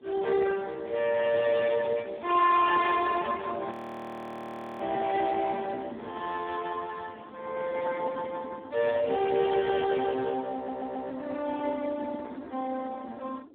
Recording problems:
phone line; 240 Hz to 2.3 kHz, Speex
wind on the microphone; below 380 Hz, SNR 20 dB
audio freezing; at 3.5 s for 1 s
audio stuttering; at 11 s

